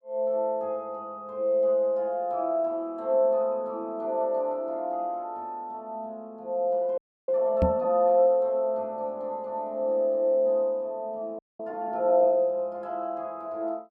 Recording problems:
frozen audio; at 7 s and at 11 s
knock on the microphone; at 7.5 s; peak +4 dB vs average level

